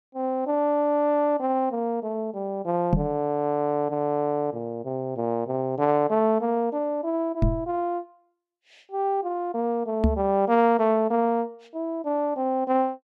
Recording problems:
knock on the microphone; at 3 s, at 7.5 s and at 10 s; peak +6 dB vs average level

